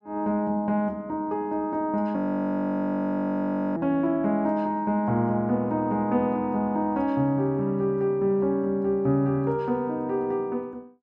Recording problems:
frozen audio; at 2 s for 1.5 s

